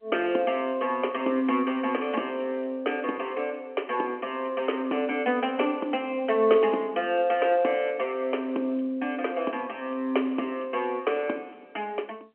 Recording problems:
phone line; 240 Hz to 3.2 kHz, G.711

